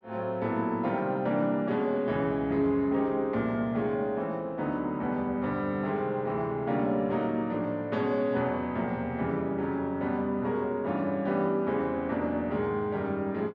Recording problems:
none

